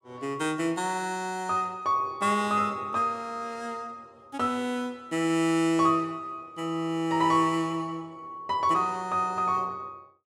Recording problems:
none

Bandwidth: 17.5 kHz